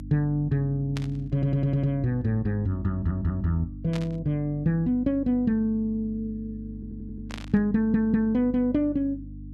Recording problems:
hum; 50 Hz, harmonics up to 300 Hz, SNR 14 dB
burst of static; at 1 s, at 4 s and at 7.5 s; peak -8 dB vs average level
stutter; 4 times, first at 1.5 s

